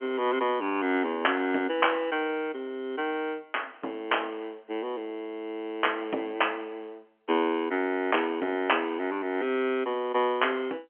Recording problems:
telephone audio; 220 Hz to 3.2 kHz, G.711

